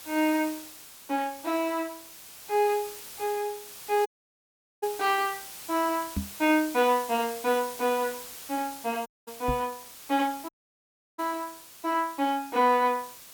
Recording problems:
background hiss; slope 0 dB per octave, SNR 13 dB
dropout; at 4 s for 1 s, at 9 s and at 10 s for 0.5 s
microphone thump; at 6 s and at 9.5 s; peak +1 dB vs average level

